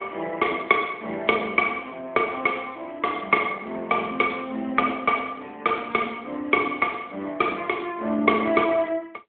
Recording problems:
phone line; 240 Hz to 3.4 kHz, AMR-NB

